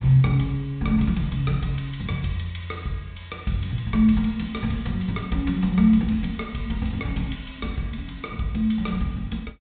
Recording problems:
low-pass filter; nothing above 4 kHz

